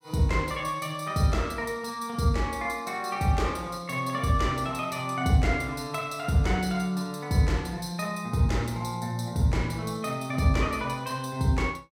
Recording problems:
none

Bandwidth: 16.5 kHz